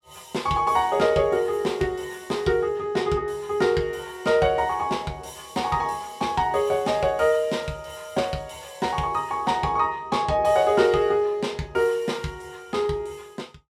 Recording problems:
none

